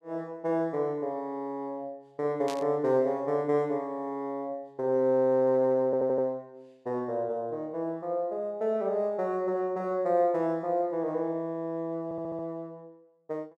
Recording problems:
burst of static; at 2.5 s; peak -6 dB vs average level
audio stuttering; at 6 s and at 12 s

